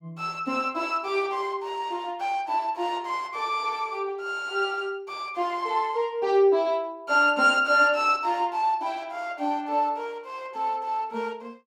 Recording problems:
none

